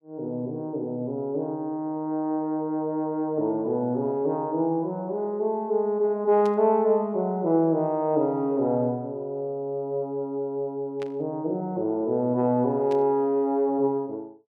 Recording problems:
static burst; at 6.5 s, at 11 s and at 13 s; peak -13 dB vs average level

